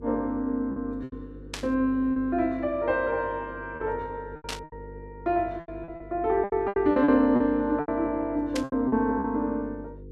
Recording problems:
electrical hum; 50 Hz, harmonics up to 500 Hz, SNR 18 dB
lost packets; 11% of the sound replaced, filled with repeated pitch periods
static burst; at 1.5 s, at 4.5 s and at 8.5 s; peak -2 dB vs average level

